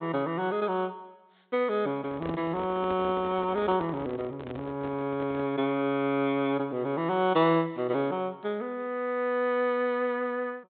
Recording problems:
treble missing; nothing above 4 kHz
microphone handling noise; from 2 to 5.5 s; peak -3 dB vs average level

